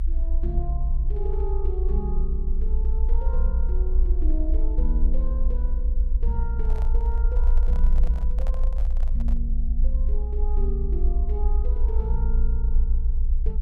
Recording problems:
rumble; below 58 Hz, strongest tone 24 Hz, SNR -12 dB
handling noise; from 6.5 to 9.5 s; peak -1 dB vs average level

